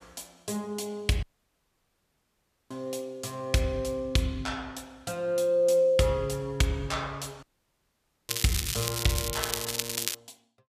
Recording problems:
dropout; at 1 s for 1.5 s and at 7.5 s for 1 s
crackle; from 8.5 to 10 s; loose cable, SNR 1 dB

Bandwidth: 14.5 kHz